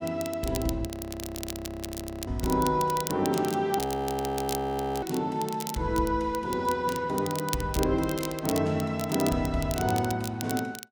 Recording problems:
crackling; vinyl, SNR 10 dB
audio freezing; at 1 s for 1.5 s and at 4 s for 1 s

